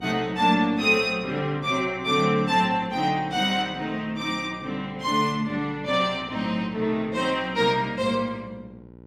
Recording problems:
hum; 60 Hz, harmonics up to 1.1 kHz, SNR 22 dB

